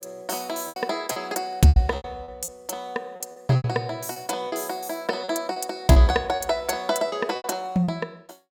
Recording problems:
lost packets; 11% of the sound replaced, filled with repeated pitch periods

